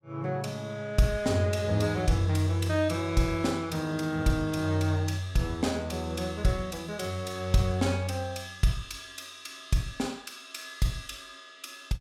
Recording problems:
none

